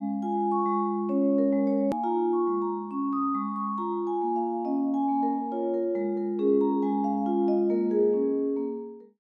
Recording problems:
edit click; at 2 s

